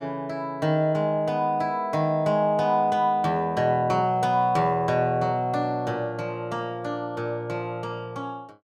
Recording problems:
none

